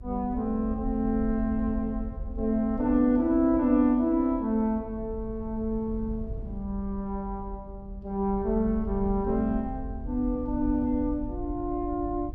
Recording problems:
low-frequency rumble; below 72 Hz, SNR 11 dB

